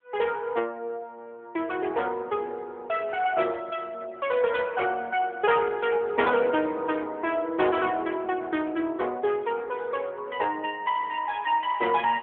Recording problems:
telephone audio; 300 Hz to 3.4 kHz, AMR-NB

